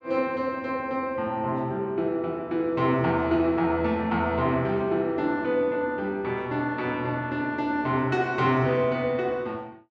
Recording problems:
none

